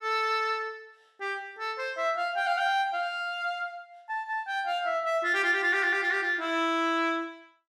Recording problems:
none

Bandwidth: 15 kHz